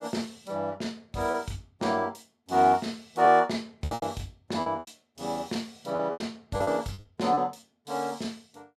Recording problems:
lost packets; 9% of the sound replaced, filled with repeated pitch periods

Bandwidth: 14.5 kHz